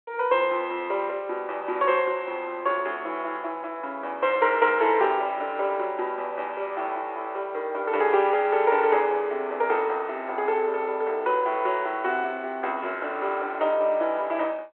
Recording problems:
phone line; 300 Hz to 3.5 kHz, G.726

